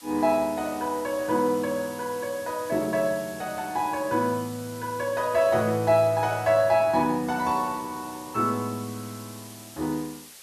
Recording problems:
background hiss; slope +1 dB per octave, SNR 18 dB

